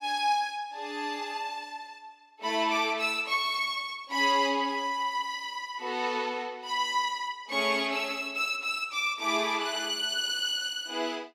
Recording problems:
none

